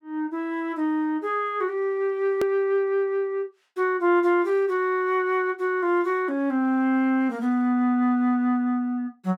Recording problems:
hard cut with a click; at 2.5 s

